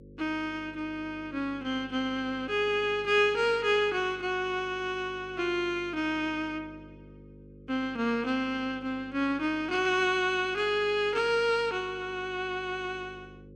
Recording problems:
electrical hum; 50 Hz, harmonics up to 550 Hz, SNR 21 dB

